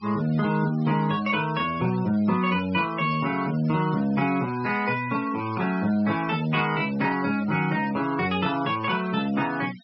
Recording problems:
treble cut off; nothing above 5.5 kHz
noise reduction artefacts; signal-to-artefact ratio 18 dB

